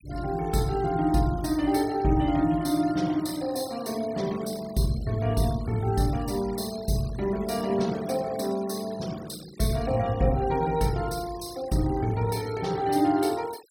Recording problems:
denoising artefacts; signal-to-artefact ratio 19 dB

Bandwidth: 17 kHz